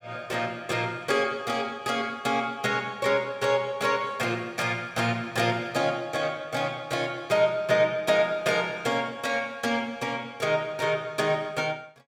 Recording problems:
none

